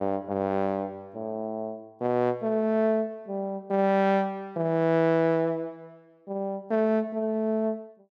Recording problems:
none

